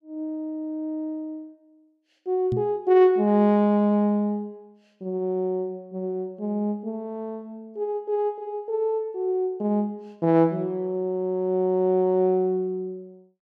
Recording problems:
knock on the microphone; at 2.5 s; peak -1 dB vs average level

